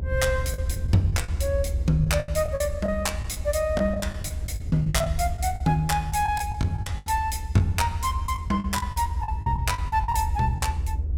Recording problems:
rumble; below 80 Hz, SNR 4 dB
packet loss; 13% of the sound replaced, filled with the last packet

